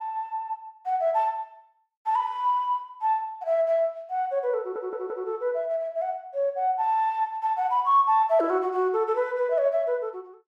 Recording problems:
audio stuttering; at 4.5 s

